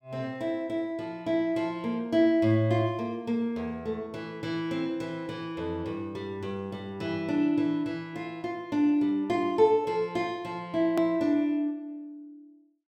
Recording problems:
edit click; at 11 s

